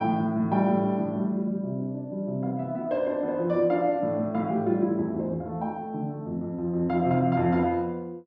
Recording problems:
none

